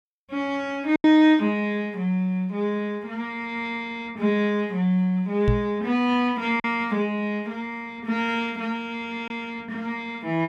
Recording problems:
lost packets; 1.4% of the sound replaced, filled with silence
microphone thump; at 5.5 s; peak +6 dB vs average level

